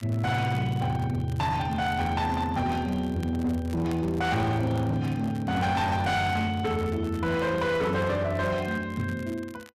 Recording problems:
distortion; hard clipping, signal-to-distortion ratio 10 dB
crackle; vinyl, SNR 25 dB

